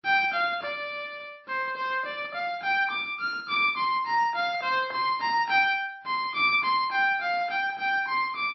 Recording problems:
lossy codec; MP3, log-spectral distance 2 dB, nothing above 4.8 kHz

